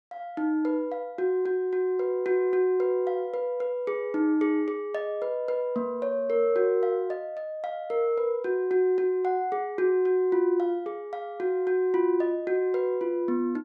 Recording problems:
none

